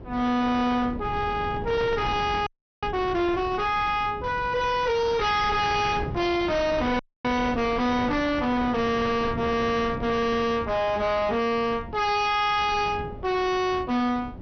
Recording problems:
treble missing; nothing above 6.1 kHz
distorted audio; hard clipping, signal-to-distortion ratio 6 dB
wind on the microphone; below 430 Hz, SNR 12 dB
audio freezing; at 2.5 s and at 7 s

